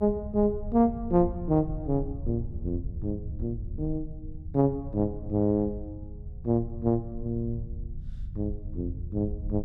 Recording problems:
rumble; below 88 Hz, SNR 10 dB

